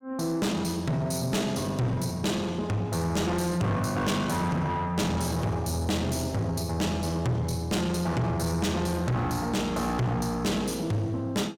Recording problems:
distortion; soft clipping, signal-to-distortion ratio 6 dB

